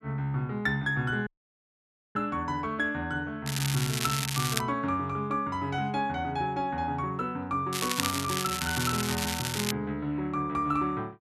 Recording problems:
audio cutting out; at 1.5 s for 1 s
crackle; from 3.5 to 4.5 s and from 7.5 to 9.5 s; loose cable, SNR 1 dB

